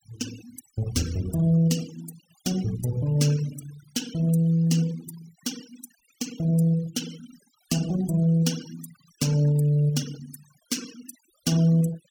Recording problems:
denoising artefacts; signal-to-artefact ratio 17 dB

